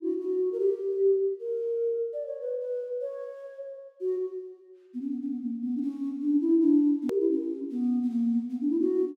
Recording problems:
hard cut with a click; at 7 s

